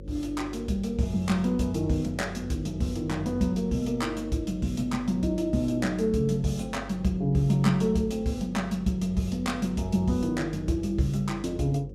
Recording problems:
hum; 50 Hz, harmonics up to 550 Hz, SNR 15 dB

